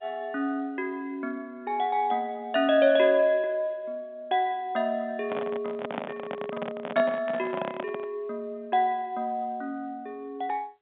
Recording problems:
telephone audio; 170 Hz to 3.7 kHz, G.711
handling noise; from 5 to 8 s; peak 0 dB vs average level

